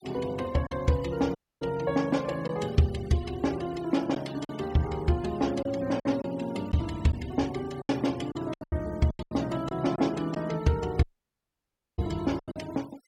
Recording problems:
noise reduction artefacts; signal-to-artefact ratio 20 dB
lost packets; 7% of the sound replaced, filled with silence
dropout; at 1.5 s and at 11 s for 1 s

